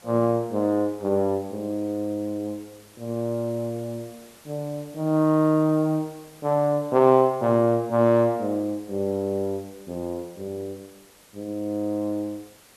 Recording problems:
background hiss; slope -2 dB per octave, SNR 26 dB

